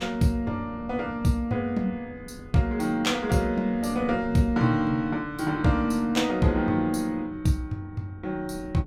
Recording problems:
wind noise; below 240 Hz, SNR 18 dB

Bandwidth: 16 kHz